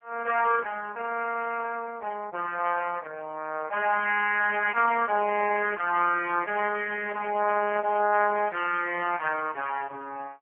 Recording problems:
telephone audio; 370 Hz to 2.6 kHz, AMR-NB

